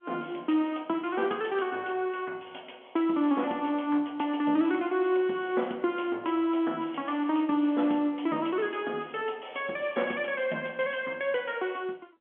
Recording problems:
telephone audio; 190 Hz to 3.4 kHz, G.711

